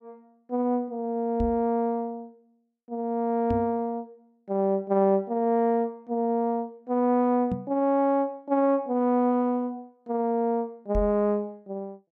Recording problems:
knock on the microphone; 4 times, first at 1.5 s; peak 0 dB vs average level

